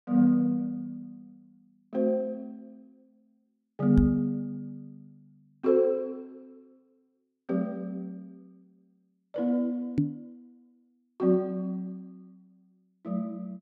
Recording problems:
microphone thump; at 4 s and at 10 s; peak +7 dB vs average level

